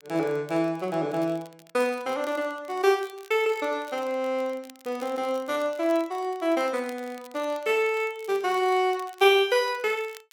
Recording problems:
crackling; vinyl, SNR 25 dB

